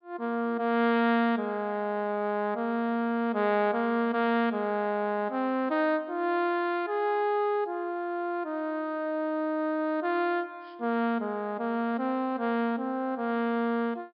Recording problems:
treble cut off; nothing above 5.2 kHz

